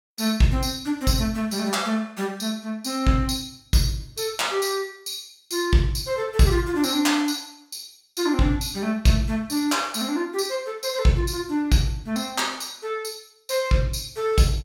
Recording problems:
none

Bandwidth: 17 kHz